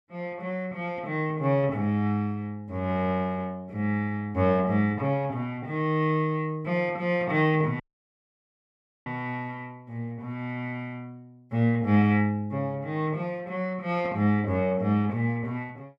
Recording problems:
dropout; at 8 s for 1.5 s

